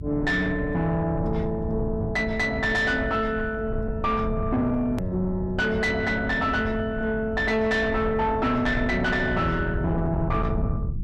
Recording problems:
distortion; soft clipping, signal-to-distortion ratio 10 dB
hum; 50 Hz, harmonics up to 350 Hz, SNR 18 dB
low-frequency rumble; below 150 Hz, SNR 8 dB
hard cut with a click; at 5 s

